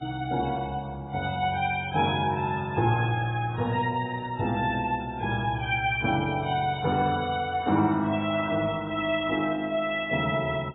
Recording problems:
lossy compression; Vorbis, then AAC, log-spectral distance 3 dB, nothing above 3.4 kHz

